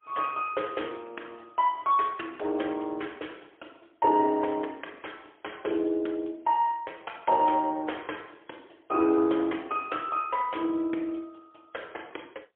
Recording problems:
phone line; 280 Hz to 3.4 kHz, AMR-NB, then MP3

